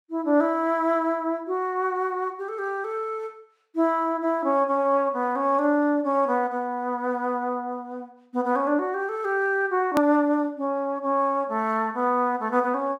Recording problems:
hard cut with a click; at 10 s

